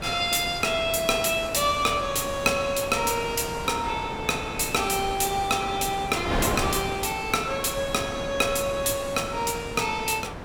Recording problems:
wind on the microphone; below 1 kHz, SNR 9 dB

